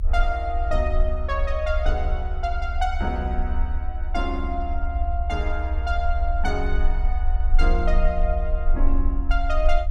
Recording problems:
low-frequency rumble; below 56 Hz, strongest tone 26 Hz, SNR -3 dB

